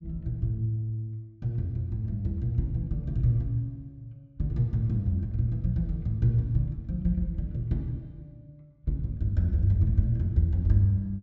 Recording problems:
low-pass filter; nothing above 8 kHz

